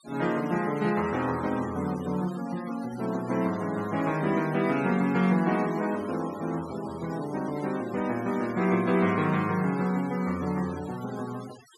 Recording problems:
denoising artefacts; signal-to-artefact ratio 17 dB

